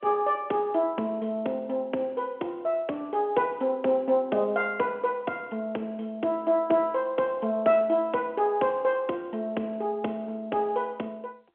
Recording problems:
telephone audio; 240 Hz to 3.4 kHz, G.711

